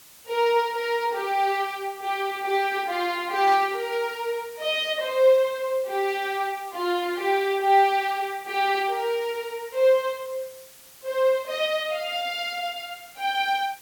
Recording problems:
background hiss; slope 0 dB per octave, SNR 22 dB
static burst; at 3.5 s; peak -11 dB vs average level

